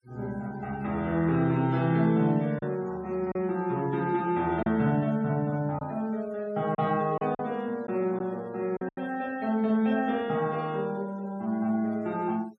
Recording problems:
denoising artefacts; signal-to-artefact ratio 26 dB
lost packets; 3% of the sound replaced, filled with silence

